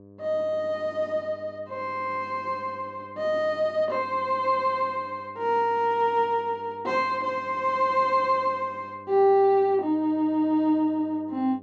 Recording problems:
hum; 50 Hz, harmonics up to 1.1 kHz, SNR 23 dB

